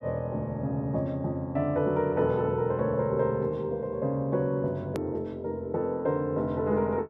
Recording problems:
hard cut with a click; at 5 s

